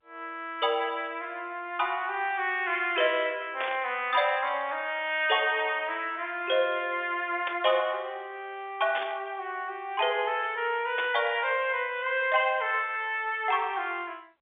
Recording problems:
phone line; 280 Hz to 3.6 kHz, G.711
static burst; 4 times, first at 3.5 s; peak -2 dB vs average level

